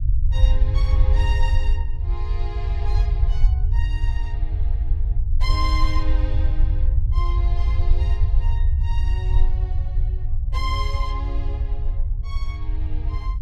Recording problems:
low-frequency rumble; below 66 Hz, SNR -12 dB

